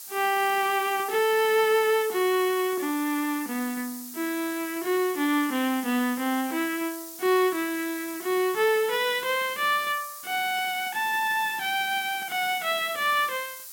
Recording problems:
hiss; SNR 12 dB

